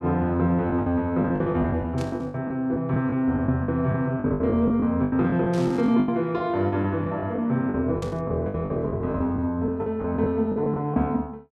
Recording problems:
packet loss; 15% of the sound replaced, filled with the last packet
burst of static; at 2 s, at 5.5 s and at 8 s; peak -12 dB vs average level

